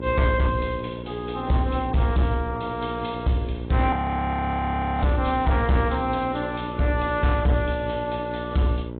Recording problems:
treble missing; nothing above 3.9 kHz
codec artefacts; AAC, log-spectral distance 6 dB
distortion; hard clipping, uneven, signal-to-distortion ratio 11 dB
hum; 60 Hz, harmonics up to 1 kHz, SNR 10 dB
audio freezing; at 4 s for 1 s

